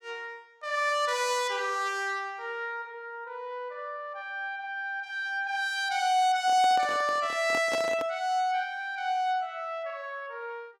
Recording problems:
handling noise; from 6.5 to 8 s; peak -2 dB vs average level

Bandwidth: 16 kHz